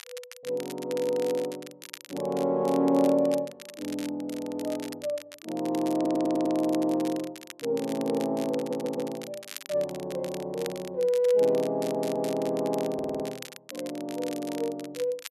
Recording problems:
crackle; vinyl, SNR 16 dB
audio stuttering; 4 times, first at 6 s

